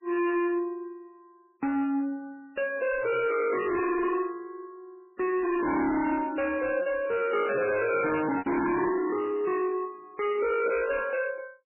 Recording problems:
codec artefacts; MP3, log-spectral distance 3 dB, nothing above 2.6 kHz
distorted audio; hard clipping, signal-to-distortion ratio 6 dB
lost packets; 1.5% of the sound replaced, filled with repeated pitch periods

